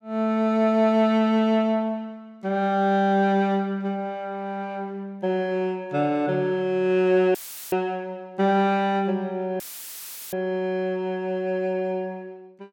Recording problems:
audio cutting out; at 7.5 s and at 9.5 s for 0.5 s; filled with static

